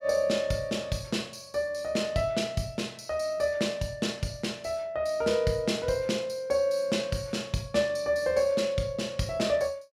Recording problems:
none

